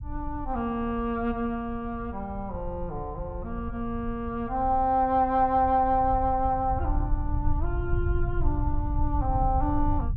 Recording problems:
rumble; below 80 Hz, SNR 6 dB

